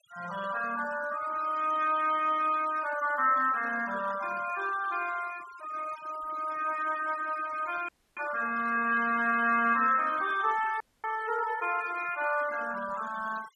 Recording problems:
noise reduction artefacts; signal-to-artefact ratio 17 dB
frozen audio; at 8 s and at 11 s

